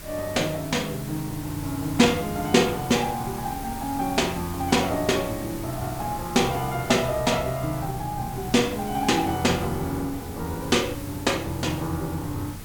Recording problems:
hiss; SNR 14 dB
wind on the microphone; below 220 Hz, SNR 16 dB

